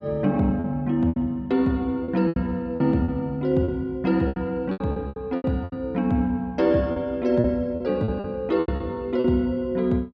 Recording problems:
packet loss; 12% of the sound replaced, filled with repeated pitch periods

